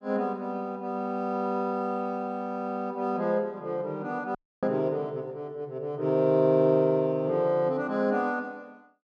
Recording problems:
audio cutting out; at 4.5 s

